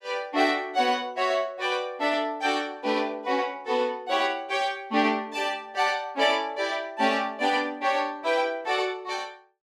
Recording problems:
none

